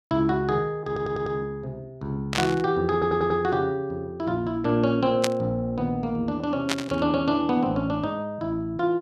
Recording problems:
stutter; at 1 s and at 3 s
burst of static; at 2.5 s, at 5 s and at 6.5 s; peak +4 dB vs average level

